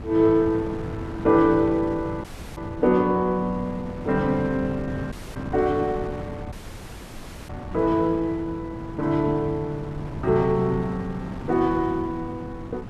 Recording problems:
wind noise; below 310 Hz, SNR 12 dB
dropout; at 2 s, at 5 s and at 6.5 s for 1 s

